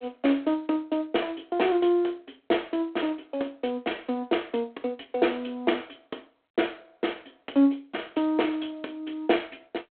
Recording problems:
telephone audio; 240 Hz to 3.4 kHz, G.726

